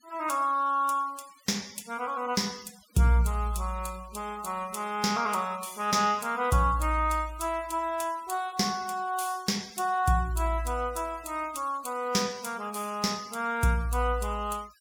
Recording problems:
denoising artefacts; signal-to-artefact ratio 21 dB

